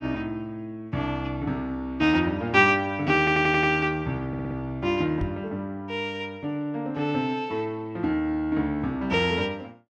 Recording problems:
audio stuttering; at 3 s and at 4.5 s
microphone thump; at 5 s; peak -2 dB vs average level

